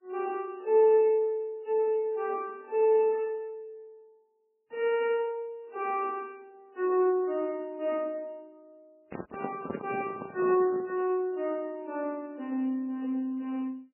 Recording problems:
codec artefacts; MP3, then MP3, log-spectral distance 2 dB, nothing above 2.4 kHz
handling noise; from 9 to 11 s; peak -2 dB vs average level

